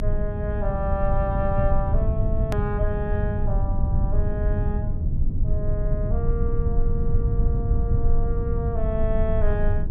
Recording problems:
low-frequency rumble; below 90 Hz, strongest tone 20 Hz, SNR -5 dB
hard cut with a click; at 2.5 s

